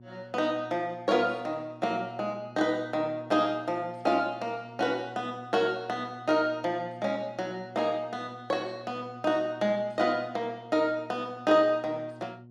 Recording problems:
hum; 60 Hz, harmonics up to 720 Hz, SNR 20 dB

